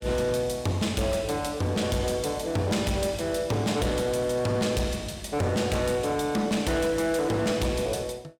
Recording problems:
distorted audio; hard clipping, signal-to-distortion ratio 11 dB

